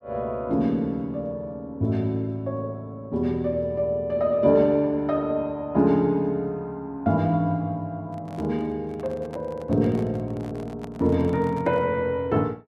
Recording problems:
handling noise; from 8 to 12 s; peak -11 dB vs average level

